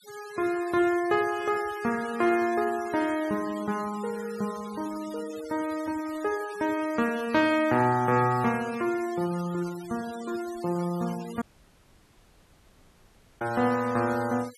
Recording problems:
noise reduction artefacts; signal-to-artefact ratio 18 dB
audio cutting out; at 11 s for 2 s

